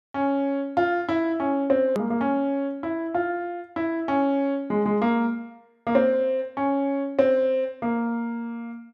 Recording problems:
edit click; at 2 s

